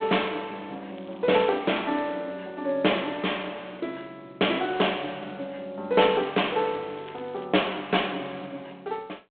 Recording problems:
telephone audio; 280 Hz to 3.6 kHz, G.726
crackling; at 1 s and from 6 to 7.5 s; loose cable, SNR 27 dB

